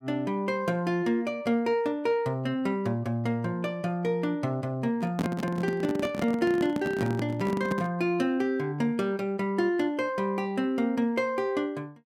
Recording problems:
handling noise; from 5 to 8 s; peak +2 dB vs average level

